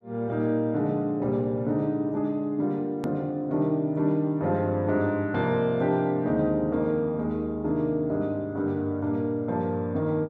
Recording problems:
edit click; at 3 s

